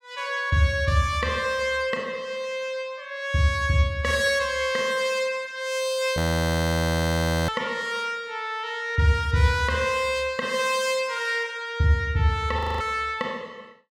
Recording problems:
audio freezing; at 6 s for 1.5 s and at 13 s

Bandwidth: 17 kHz